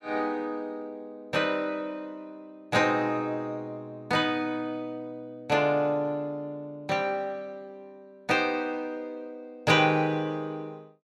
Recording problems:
none

